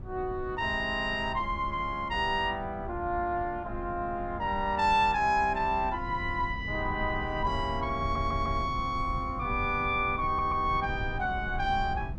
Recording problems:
wind on the microphone; below 130 Hz, SNR 10 dB
stutter; at 8 s and at 10 s

